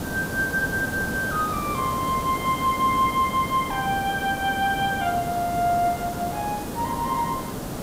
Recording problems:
hiss; SNR 6 dB

